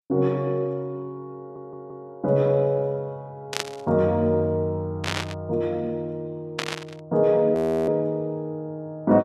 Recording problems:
audio stuttering; at 1.5 s
burst of static; at 3.5 s, at 5 s and at 6.5 s; peak +2 dB vs average level
audio freezing; at 7.5 s

